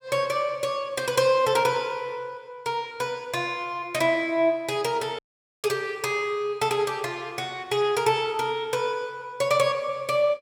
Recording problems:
audio cutting out; at 5 s

